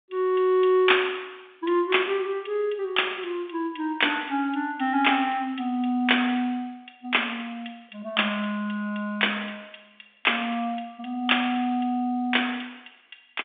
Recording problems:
phone line; 220 Hz to 3.7 kHz, G.711

